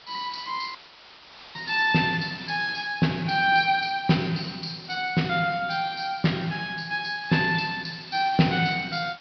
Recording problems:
low-pass filter; nothing above 5.5 kHz
background hiss; SNR 21 dB
audio cutting out; at 1 s for 1 s

